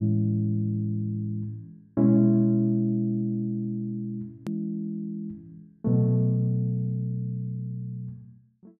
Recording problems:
hard cut with a click; at 4.5 s

